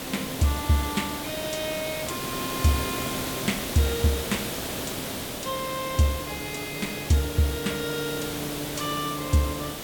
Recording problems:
hiss; slope -3 dB per octave, SNR 4 dB

